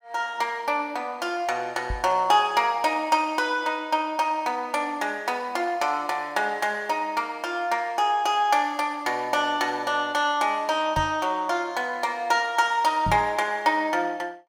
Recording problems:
knock on the microphone; at 2 s, at 11 s and at 13 s; peak -2 dB vs average level

